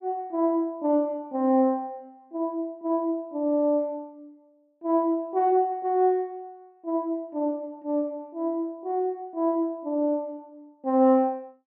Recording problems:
none

